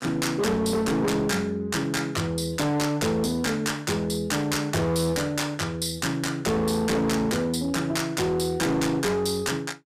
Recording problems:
distortion; hard clipping, signal-to-distortion ratio 7 dB

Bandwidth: 15 kHz